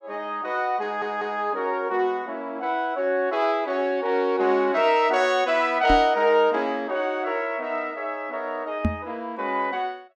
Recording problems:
stutter; at 1 s
knock on the microphone; at 6 s and at 9 s; peak +4 dB vs average level

